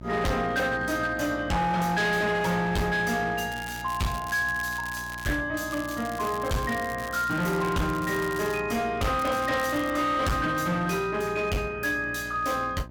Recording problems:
distorted audio; hard clipping, signal-to-distortion ratio 8 dB
mains hum; 60 Hz, harmonics up to 960 Hz, SNR 17 dB
crackle; from 3.5 to 5.5 s, from 5.5 to 8.5 s and at 9 s; loose cable, SNR 17 dB

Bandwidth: 18 kHz